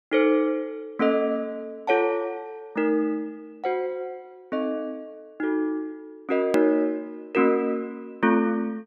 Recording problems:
edit click; at 6.5 s

